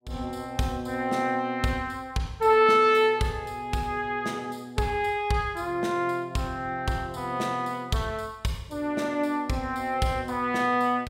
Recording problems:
none

